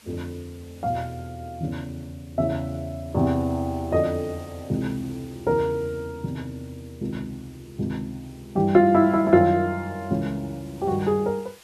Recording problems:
background hiss; slope 0 dB per octave, SNR 27 dB

